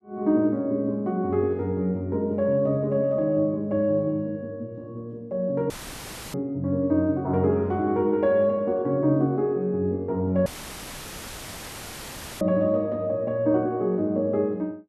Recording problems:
audio cutting out; at 5.5 s for 0.5 s and at 10 s for 2 s; filled with static

